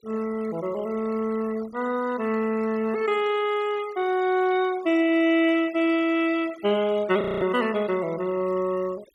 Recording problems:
noise reduction artefacts; signal-to-artefact ratio 20 dB
frozen audio; at 7 s

